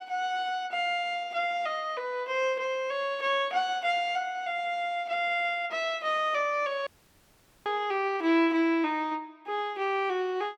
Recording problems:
dropout; at 7 s for 1 s

